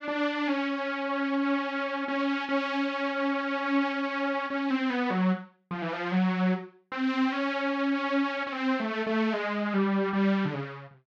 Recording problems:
none

